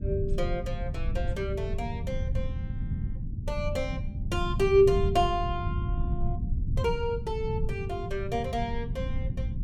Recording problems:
low-frequency rumble; below 120 Hz, SNR 3 dB

